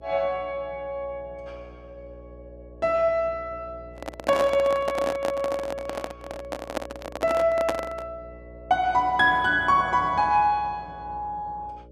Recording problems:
hum; 60 Hz, harmonics up to 600 Hz, SNR 22 dB
handling noise; from 4 to 8 s; peak +2 dB vs average level

